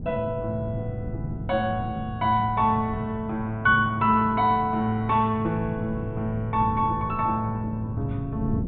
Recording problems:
low-pass filter; nothing above 4 kHz
wind on the microphone; below 200 Hz, SNR 12 dB

